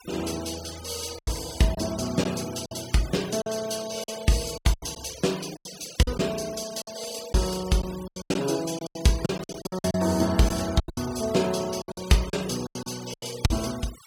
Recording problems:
noise reduction artefacts; signal-to-artefact ratio 13 dB
lost packets; 12% of the sound replaced, filled with silence

